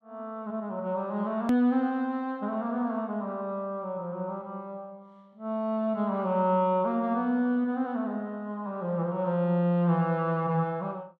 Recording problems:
click at an edit; at 1.5 s

